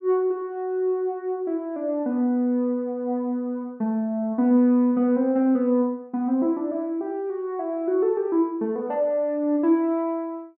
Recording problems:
none

